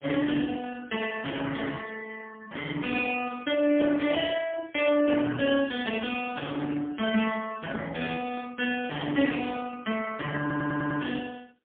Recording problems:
telephone audio; 260 Hz to 3.2 kHz, AMR-NB, then MP3
stutter; at 10 s

